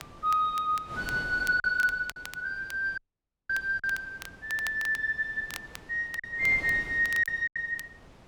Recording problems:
wind noise; below 1.1 kHz, SNR 19 dB
crackle; vinyl, SNR 18 dB
packet loss; 4% of the sound replaced, filled with silence
dropout; at 3 s for 0.5 s

